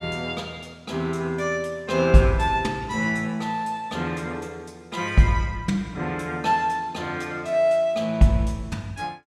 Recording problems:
none

